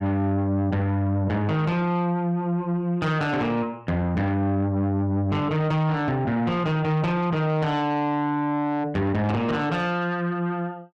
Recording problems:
distorted audio; soft clipping, signal-to-distortion ratio 10 dB

